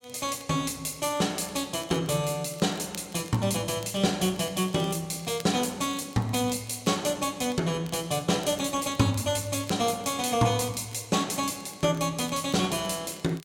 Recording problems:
crackling; vinyl, SNR 22 dB

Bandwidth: 16.5 kHz